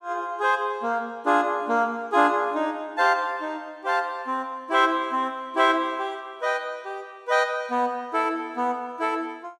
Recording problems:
none

